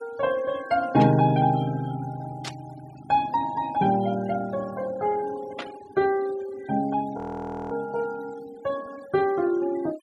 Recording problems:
noise reduction artefacts; signal-to-artefact ratio 20 dB
static burst; at 1 s, at 2.5 s and at 5.5 s; peak -4 dB vs average level
frozen audio; at 7 s for 0.5 s

